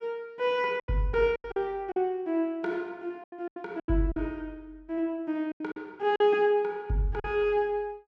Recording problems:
lost packets; 9% of the sound replaced, filled with silence

